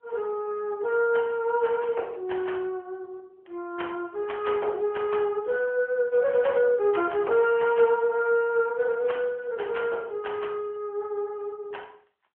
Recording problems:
phone line; 300 Hz to 3.2 kHz, AMR-NB

